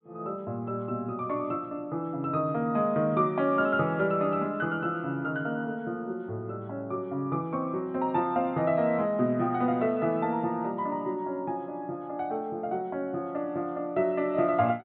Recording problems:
treble cut off; nothing above 4 kHz

